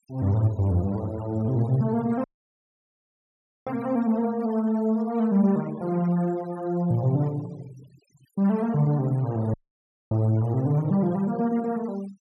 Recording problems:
denoising artefacts; signal-to-artefact ratio 24 dB
dropout; at 2 s for 1.5 s and at 9.5 s for 0.5 s

